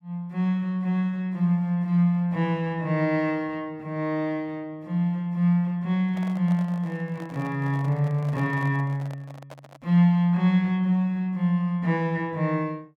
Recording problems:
handling noise; from 6 to 10 s; peak -12 dB vs average level

